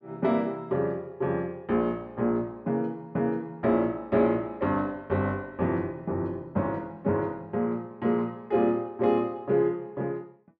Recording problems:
none

